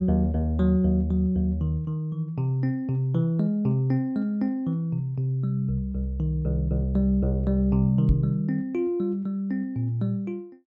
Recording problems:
knock on the microphone; at 8 s; peak +6 dB vs average level

